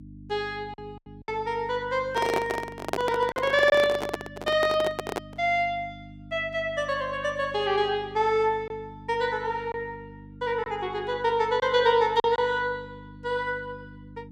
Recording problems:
mains hum; 50 Hz, harmonics up to 300 Hz, SNR 19 dB
packet loss; 3% of the sound replaced, filled with silence
handling noise; from 2 to 5.5 s; peak +3 dB vs average level

